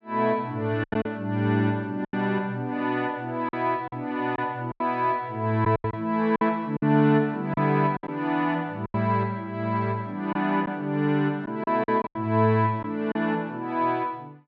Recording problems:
lost packets; 7% of the sound replaced, filled with silence

